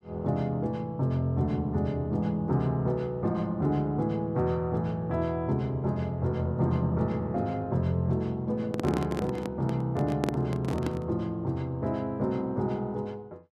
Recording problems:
handling noise; from 8.5 to 11 s; peak +3 dB vs average level

